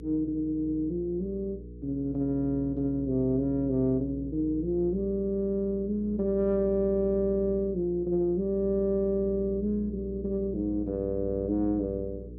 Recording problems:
hum; 60 Hz, harmonics up to 480 Hz, SNR 12 dB

